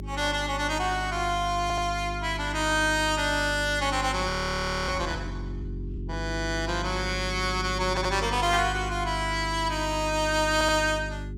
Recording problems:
electrical hum; 50 Hz, harmonics up to 400 Hz, SNR 9 dB
audio stuttering; at 1.5 s, at 8 s and at 11 s
audio freezing; at 4.5 s for 0.5 s

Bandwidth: 17 kHz